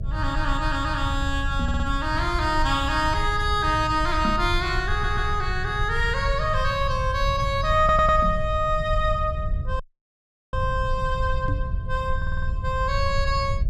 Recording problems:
mains hum; 60 Hz, harmonics up to 660 Hz, SNR 23 dB
rumble; below 88 Hz, SNR 5 dB
microphone thump; 4 times, first at 1.5 s; peak -1 dB vs average level
stutter; 4 times, first at 1.5 s
audio cutting out; at 10 s for 0.5 s

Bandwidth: 14.5 kHz